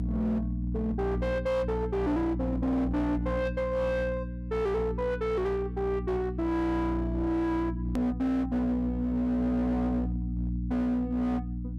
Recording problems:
distorted audio; hard clipping, signal-to-distortion ratio 11 dB
hum; 60 Hz, harmonics up to 300 Hz, SNR 4 dB
edit click; at 8 s

